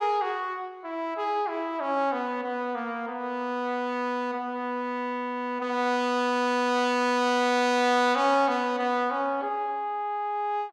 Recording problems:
none

